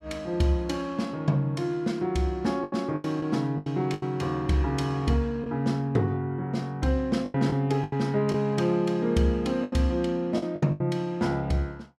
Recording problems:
lost packets; 7% of the sound replaced, filled with the last packet

